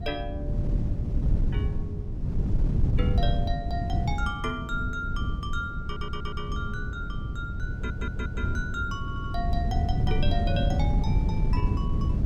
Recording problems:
wind noise; below 130 Hz, SNR -6 dB
stutter; at 6 s, at 7.5 s and at 9 s

